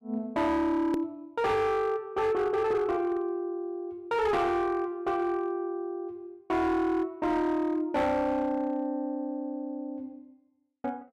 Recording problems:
distorted audio; hard clipping, signal-to-distortion ratio 12 dB
edit click; at 1 s

